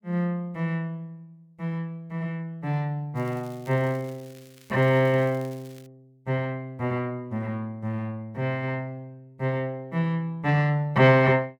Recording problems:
crackling; from 3 to 6 s; loose cable, SNR 26 dB

